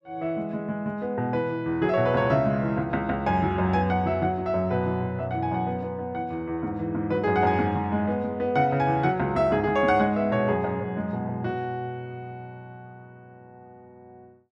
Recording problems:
none

